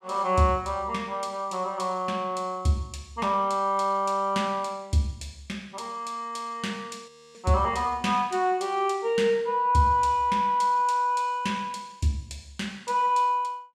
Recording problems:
frozen audio; at 7 s

